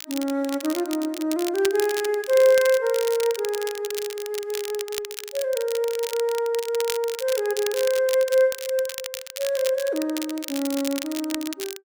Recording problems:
crackling; vinyl, SNR 10 dB

